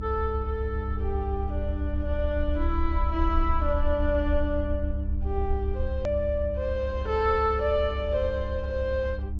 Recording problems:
treble missing; nothing above 8 kHz
mains hum; 50 Hz, harmonics up to 600 Hz, SNR 11 dB
low-frequency rumble; below 68 Hz, SNR 2 dB
hard cut with a click; at 6 s

